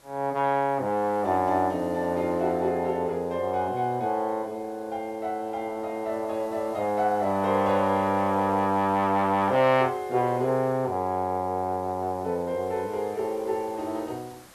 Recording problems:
background hiss; slope -3 dB per octave, SNR 26 dB

